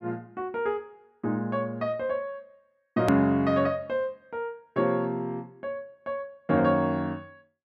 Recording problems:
hard cut with a click; at 3 s

